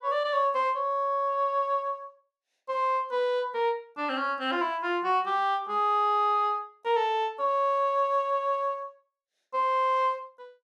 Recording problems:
none

